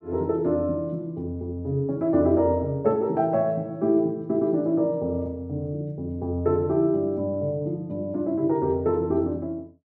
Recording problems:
none

